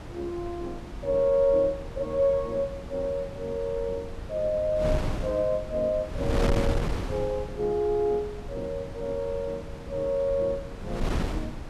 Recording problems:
wind noise; below 320 Hz, SNR 7 dB

